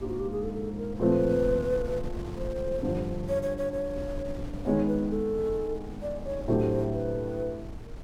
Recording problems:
wind noise; below 170 Hz, SNR 12 dB

